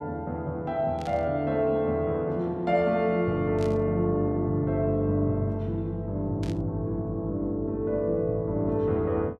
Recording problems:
burst of static; at 1 s, at 3.5 s and at 6.5 s; peak -13 dB vs average level

